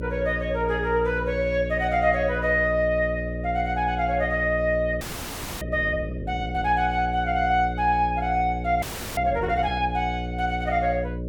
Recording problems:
hum; 60 Hz, harmonics up to 600 Hz, SNR 7 dB
frozen audio; at 5 s for 0.5 s and at 9 s

